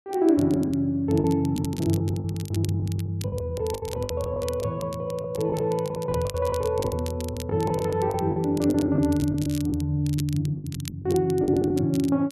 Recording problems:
crackling; vinyl, SNR 18 dB
packet loss; 16% of the sound replaced, filled with the last packet

